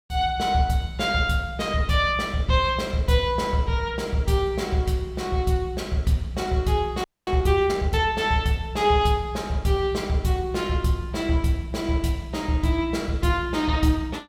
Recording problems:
audio freezing; at 7 s

